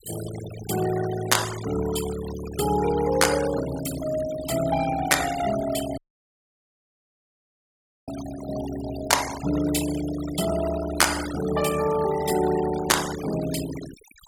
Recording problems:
denoising artefacts; signal-to-artefact ratio 11 dB
dropout; at 6 s for 2 s

